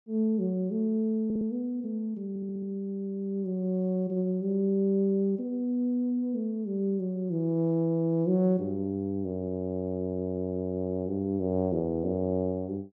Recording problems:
stutter; at 1.5 s, at 2.5 s and at 10 s

